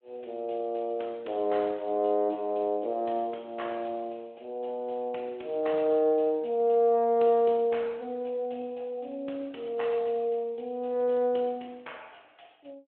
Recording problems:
telephone audio; 280 Hz to 3.5 kHz, Speex

